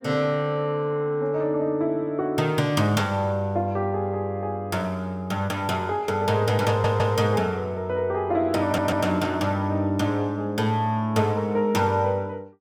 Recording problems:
stutter; at 6.5 s and at 8.5 s

